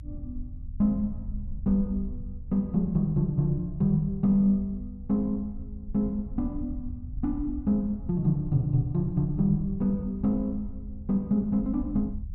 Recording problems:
low-frequency rumble; below 74 Hz, SNR 13 dB

